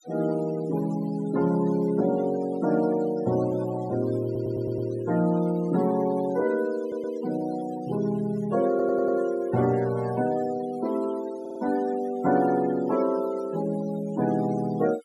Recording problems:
noise reduction artefacts; signal-to-artefact ratio 18 dB
audio stuttering; 4 times, first at 4.5 s

